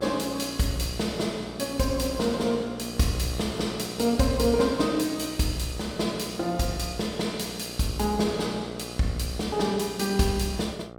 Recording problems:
hum; 60 Hz, harmonics up to 1.5 kHz, SNR 14 dB

